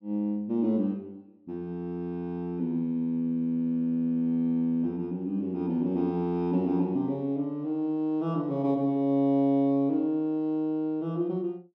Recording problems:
none

